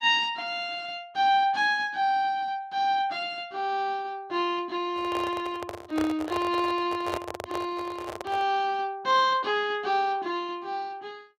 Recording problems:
lossy compression; Opus, log-spectral distance 2 dB
handling noise; from 5 to 8.5 s; peak -1 dB vs average level

